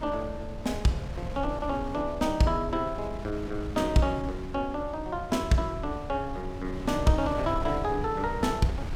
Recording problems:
wind noise; below 150 Hz, SNR 9 dB

